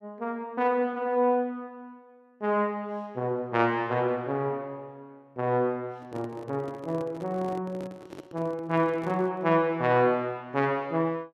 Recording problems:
microphone handling noise; from 6 to 9.5 s; peak -10 dB vs average level

